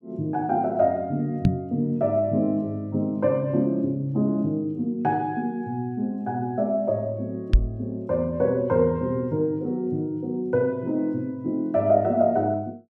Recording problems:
microphone thump; at 1.5 s and at 7.5 s; peak +9 dB vs average level

